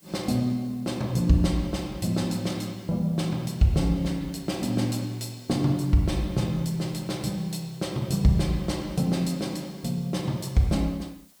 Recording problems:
background hiss; slope -1 dB per octave, SNR 28 dB

